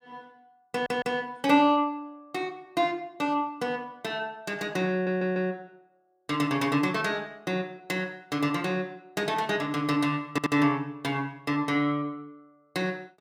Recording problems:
audio stuttering; at 0.5 s, at 5 s and at 10 s

